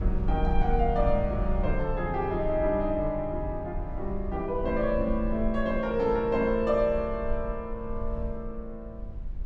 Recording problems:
low-frequency rumble; below 54 Hz, SNR 7 dB

